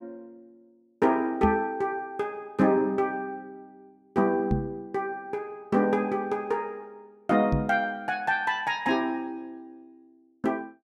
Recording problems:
microphone bump; at 1.5 s, at 4.5 s and at 7.5 s; peak +5 dB vs average level

